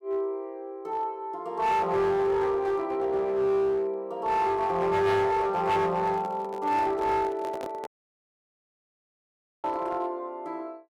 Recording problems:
distortion; hard clipping, uneven, signal-to-distortion ratio 10 dB
microphone handling noise; from 6 to 8 s; peak -6 dB vs average level
dropout; at 8 s for 2 s

